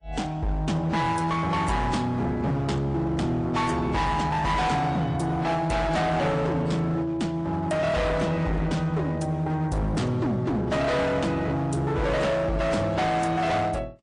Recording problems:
lossy compression; MP3, then AAC, log-spectral distance 2 dB, nothing above 9.8 kHz
distorted audio; hard clipping, signal-to-distortion ratio 7 dB

